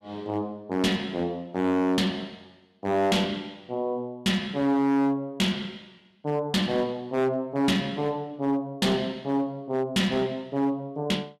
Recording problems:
distortion; hard clipping, signal-to-distortion ratio 10 dB

